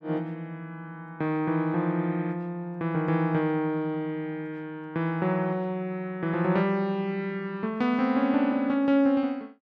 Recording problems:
none

